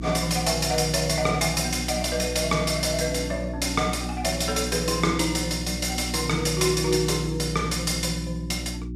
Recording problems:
hum; 60 Hz, harmonics up to 360 Hz, SNR 8 dB

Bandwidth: 14.5 kHz